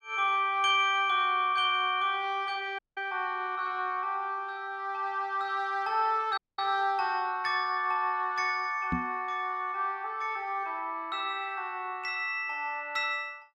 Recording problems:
audio cutting out; at 3 s and at 6.5 s
microphone thump; at 9 s; peak +1 dB vs average level

